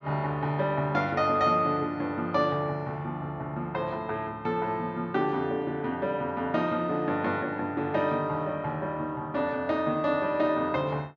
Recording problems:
low-pass filter; nothing above 8 kHz

